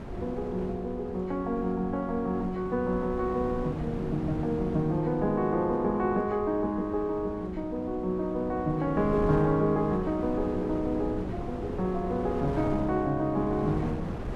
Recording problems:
wind on the microphone; below 400 Hz, SNR 9 dB

